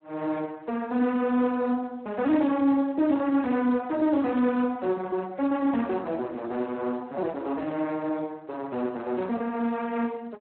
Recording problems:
telephone audio; 190 Hz to 3.4 kHz, Speex

